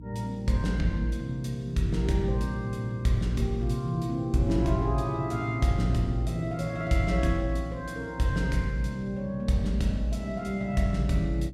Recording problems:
electrical hum; 60 Hz, harmonics up to 300 Hz, SNR 16 dB

